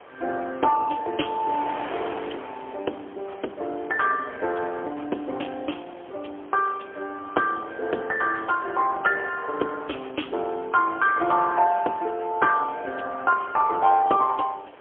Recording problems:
telephone audio; 280 Hz to 3.2 kHz, AMR-NB, then MP3
wind noise; below 1.7 kHz, SNR 18 dB

